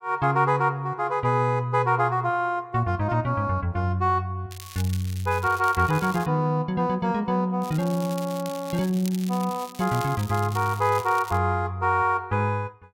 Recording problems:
crackling; from 4.5 to 6.5 s and from 7.5 to 11 s; loose cable, SNR 17 dB

